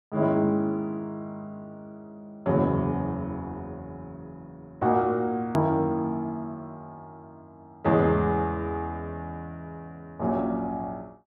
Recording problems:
hard cut with a click; at 5.5 s

